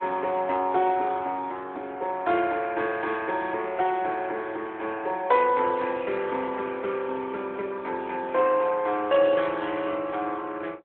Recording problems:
phone line; 280 Hz to 3.4 kHz, AMR-NB

